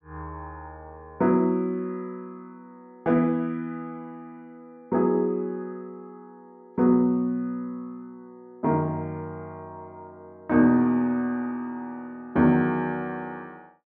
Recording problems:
none

